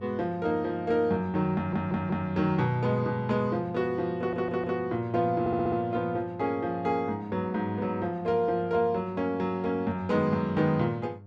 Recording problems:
hum; 50 Hz, harmonics up to 900 Hz, SNR 19 dB
audio stuttering; at 1.5 s, at 4 s and at 5.5 s

